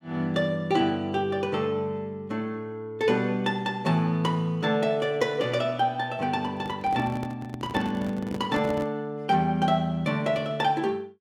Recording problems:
handling noise; from 6.5 to 9 s; peak -4 dB vs average level

